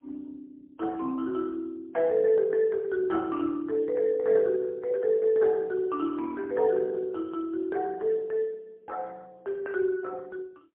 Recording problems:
telephone audio; 260 Hz to 2.3 kHz, AMR-NB, then MP3

